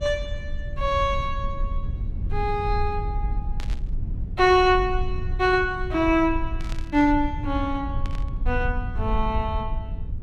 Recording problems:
low-frequency rumble; below 74 Hz, SNR 7 dB
burst of static; at 3.5 s, at 6.5 s and at 8 s; peak -12 dB vs average level

